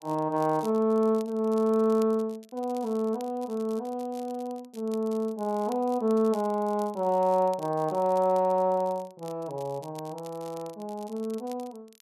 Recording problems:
crackle; vinyl, SNR 25 dB

